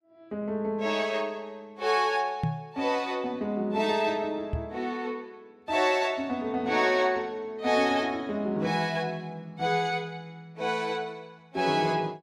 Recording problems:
microphone bump; at 2.5 s and at 4.5 s; peak +3 dB vs average level

